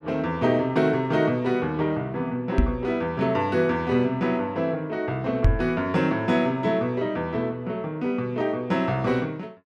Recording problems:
microphone bump; at 2.5 s and at 5.5 s; peak +8 dB vs average level

